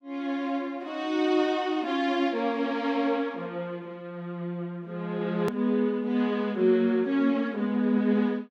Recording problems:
edit click; at 5.5 s

